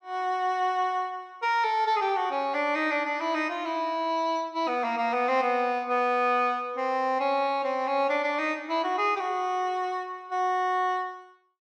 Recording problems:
none

